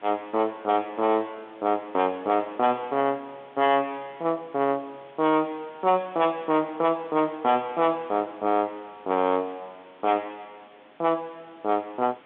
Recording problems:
telephone audio; 190 Hz to 3.1 kHz, G.711
distortion; soft clipping, signal-to-distortion ratio 8 dB
background hiss; SNR 27 dB

